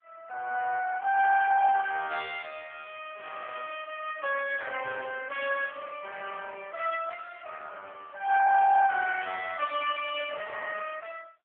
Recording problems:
telephone audio; 300 Hz to 3.1 kHz, AMR-NB

